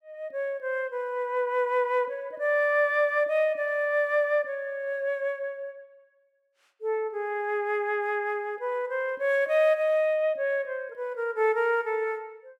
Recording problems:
none

